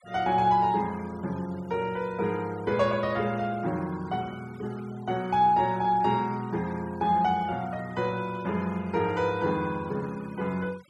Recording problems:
noise reduction artefacts; signal-to-artefact ratio 23 dB

